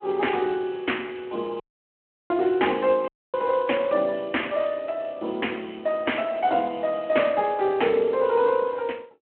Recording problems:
telephone audio; 240 Hz to 3.3 kHz, Speex
dropout; at 1.5 s for 0.5 s and at 3 s

